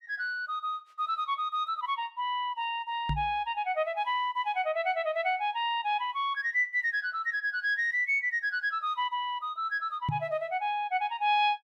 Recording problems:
knock on the microphone; at 3 s and at 10 s; peak +2 dB vs average level

